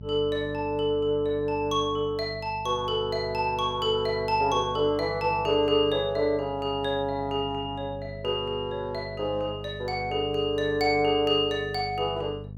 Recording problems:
hum; 50 Hz, harmonics up to 450 Hz, SNR 14 dB

